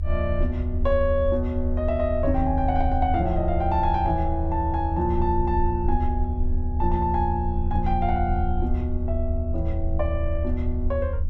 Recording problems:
low-frequency rumble; below 78 Hz, strongest tone 22 Hz, SNR 1 dB

